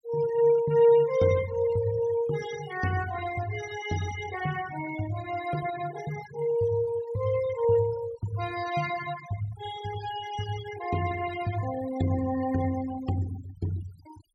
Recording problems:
noise reduction artefacts; signal-to-artefact ratio 14 dB

